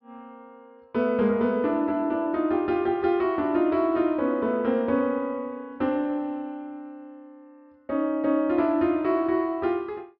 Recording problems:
treble cut off; nothing above 5.4 kHz

